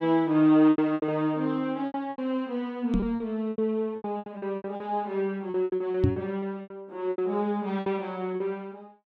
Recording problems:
packet loss; 15% of the sound replaced, filled with repeated pitch periods
knock on the microphone; at 3 s and at 6 s; peak +7 dB vs average level

